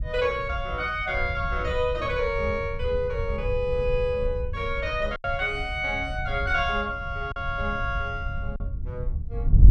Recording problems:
wind on the microphone; below 84 Hz, SNR 5 dB
lost packets; 1.7% of the sound replaced, filled with silence

